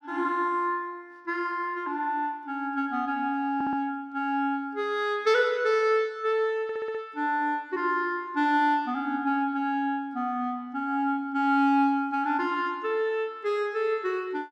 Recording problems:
audio stuttering; at 3.5 s and at 6.5 s

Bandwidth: 15 kHz